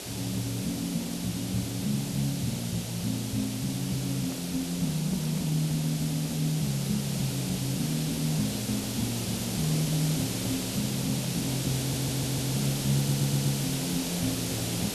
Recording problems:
background hiss; SNR 3 dB
microphone handling noise; from 4 to 6 s; peak -10 dB vs average level
audio stuttering; at 12 s and at 13 s

